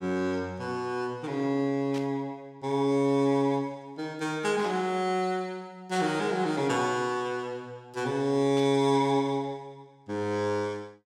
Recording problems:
burst of static; 4 times, first at 2 s; peak -9 dB vs average level

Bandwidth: 16.5 kHz